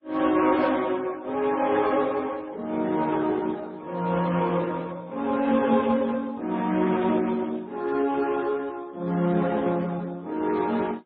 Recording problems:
lossy codec; Speex, then MP3, log-spectral distance 4 dB

